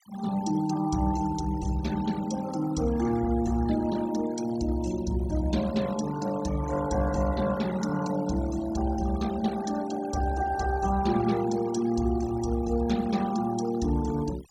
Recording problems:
noise reduction artefacts; signal-to-artefact ratio 16 dB

